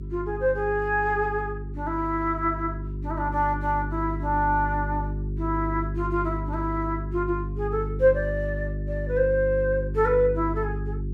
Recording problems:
hum; 50 Hz, harmonics up to 400 Hz, SNR 6 dB

